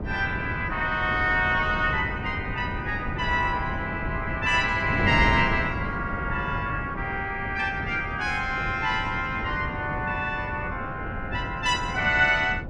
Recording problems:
wind on the microphone; below 310 Hz, SNR 7 dB

